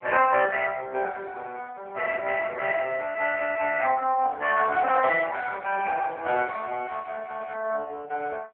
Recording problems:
phone line; 370 Hz to 2.6 kHz, AMR-NB
handling noise; from 4.5 to 6.5 s; peak -10 dB vs average level

